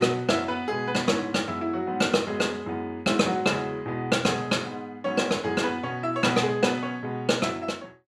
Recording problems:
none

